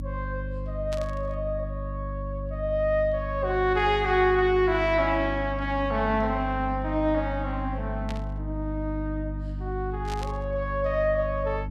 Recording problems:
mains hum; 50 Hz, harmonics up to 300 Hz, SNR 7 dB
static burst; at 1 s, at 8 s and at 10 s; peak -8 dB vs average level

